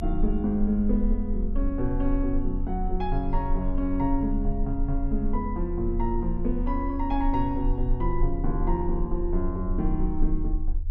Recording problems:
low-frequency rumble; below 34 Hz, strongest tone 30 Hz, SNR 3 dB

